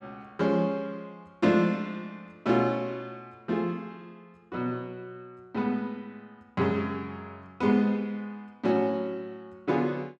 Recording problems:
none

